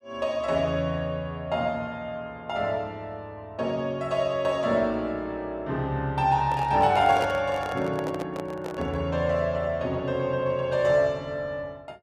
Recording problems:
handling noise; from 6.5 to 9 s; peak 0 dB vs average level

